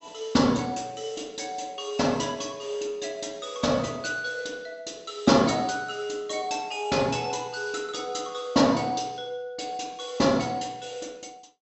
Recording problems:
treble missing; nothing above 7.8 kHz

